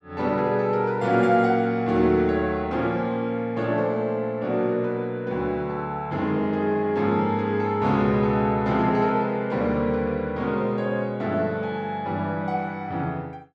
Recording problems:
none

